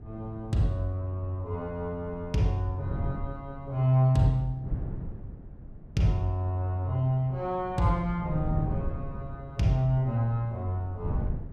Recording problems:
wind noise; below 150 Hz, SNR 11 dB

